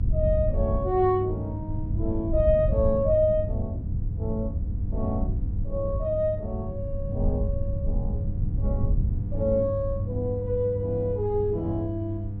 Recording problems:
hum; 50 Hz, harmonics up to 500 Hz, SNR 7 dB
wind on the microphone; below 98 Hz, SNR 3 dB

